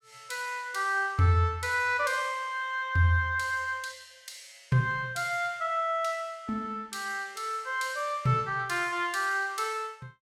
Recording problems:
none

